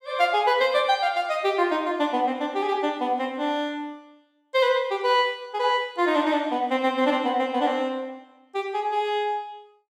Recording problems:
none

